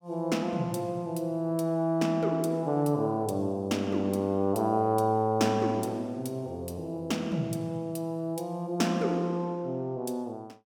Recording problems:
none

